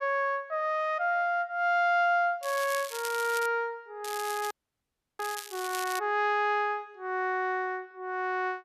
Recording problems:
crackling; from 2.5 to 3.5 s and from 4 to 6 s; loose cable, SNR 11 dB
audio cutting out; at 4.5 s for 0.5 s

